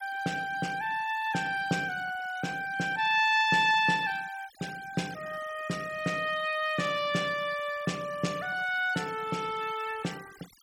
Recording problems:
denoising artefacts; signal-to-artefact ratio 19 dB

